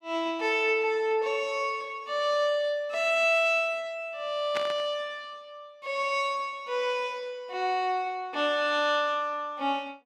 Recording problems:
static burst; at 4.5 s; peak -1 dB vs average level

